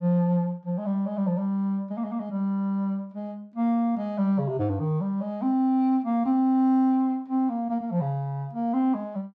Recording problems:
none

